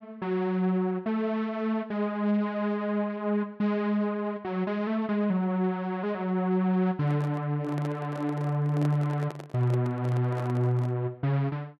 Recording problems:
microphone handling noise; from 7 to 11 s; peak -6 dB vs average level

